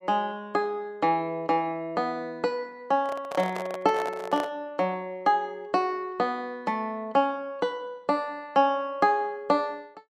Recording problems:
handling noise; from 3 to 4.5 s; peak -2 dB vs average level

